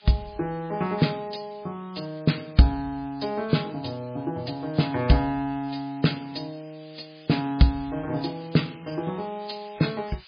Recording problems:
lossy codec; MP3, log-spectral distance 11 dB, nothing above 11 kHz
hiss; SNR 24 dB

